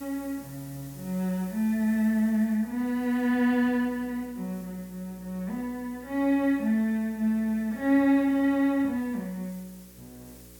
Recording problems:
hum; 60 Hz, harmonics up to 540 Hz, SNR 27 dB
hiss; slope 0 dB per octave, SNR 24 dB

